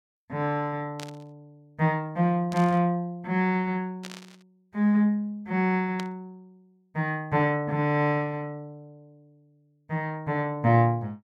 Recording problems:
static burst; 4 times, first at 1 s; peak -8 dB vs average level

